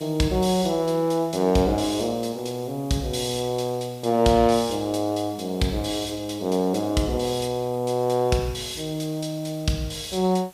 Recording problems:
hiss; slope -1 dB per octave, SNR 24 dB

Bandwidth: 15 kHz